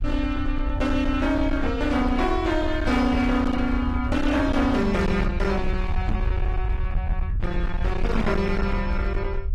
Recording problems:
codec artefacts; AAC, log-spectral distance 2 dB, nothing above 14.1 kHz
distorted audio; hard clipping, signal-to-distortion ratio 10 dB
rumble; below 78 Hz, SNR 4 dB
knock on the microphone; at 6 s; peak 0 dB vs average level

